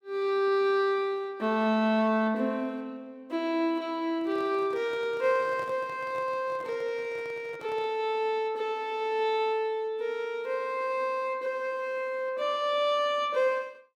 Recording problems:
microphone handling noise; from 4 to 8 s; peak -13 dB vs average level

